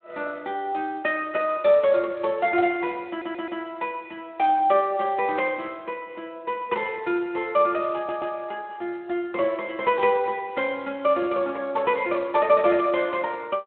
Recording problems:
telephone audio; 240 Hz to 3.7 kHz, Speex
stutter; at 3 s and at 8 s

